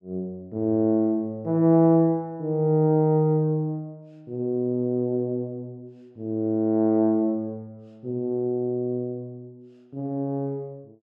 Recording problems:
none

